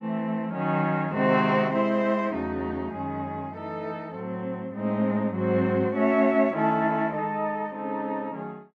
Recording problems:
none

